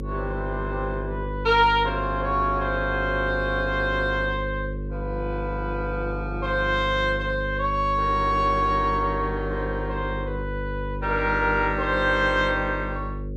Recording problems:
hum; 50 Hz, harmonics up to 550 Hz, SNR 7 dB

